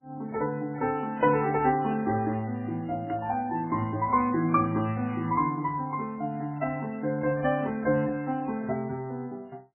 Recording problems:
lossy codec; MP3, then MP3, log-spectral distance 2 dB

